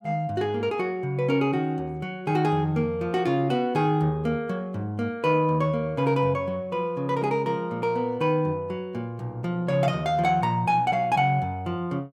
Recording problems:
none

